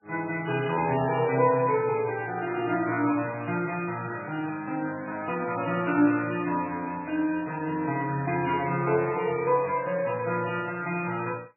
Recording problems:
lossy compression; MP3, log-spectral distance 4 dB, nothing above 2.5 kHz

